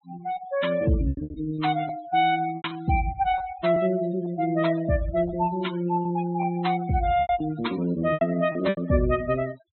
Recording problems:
treble missing; nothing above 4.1 kHz
denoising artefacts; signal-to-artefact ratio 15 dB
lost packets; 8% of the sound replaced, filled with repeated pitch periods

